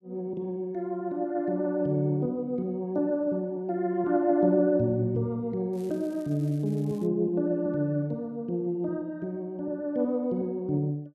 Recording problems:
crackling; from 5.5 to 7 s; loose cable, SNR 29 dB

